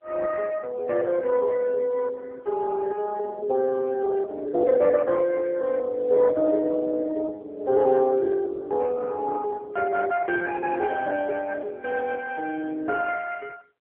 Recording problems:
telephone audio; 320 Hz to 3.1 kHz, AMR-NB

